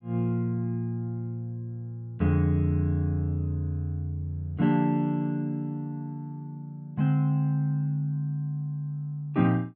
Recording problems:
none

